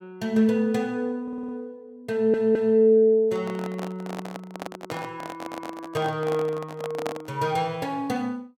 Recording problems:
stutter; at 1 s, at 2 s and at 5.5 s
handling noise; from 3.5 to 7.5 s; peak -3 dB vs average level

